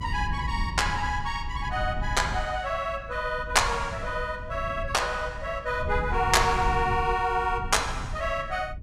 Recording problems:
low-frequency rumble; below 110 Hz, SNR 9 dB

